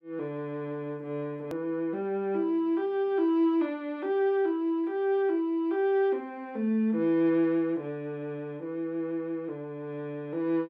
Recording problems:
hard cut with a click; at 1.5 s

